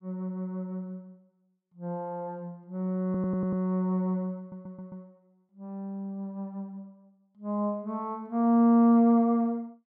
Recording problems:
audio stuttering; at 3 s and at 4.5 s

